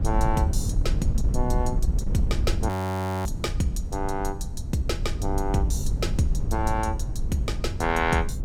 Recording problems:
wind noise; below 94 Hz, SNR 0 dB
audio freezing; at 2.5 s for 0.5 s

